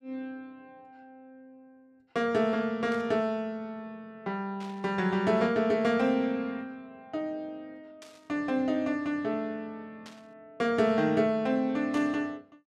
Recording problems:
static burst; 5 times, first at 3 s; peak -14 dB vs average level

